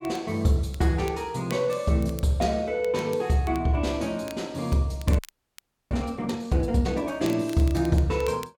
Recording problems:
crackle; vinyl, SNR 22 dB
frozen audio; at 5 s for 0.5 s

